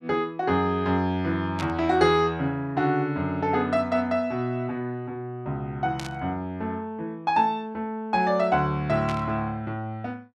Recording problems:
static burst; at 1.5 s, at 6 s and at 9 s; peak -5 dB vs average level

